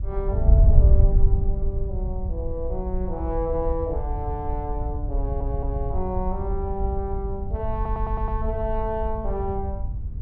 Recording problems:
wind noise; below 72 Hz, SNR -4 dB
stutter; at 5 s and at 8 s

